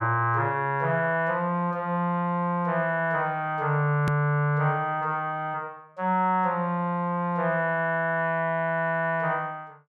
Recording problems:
click at an edit; at 4 s

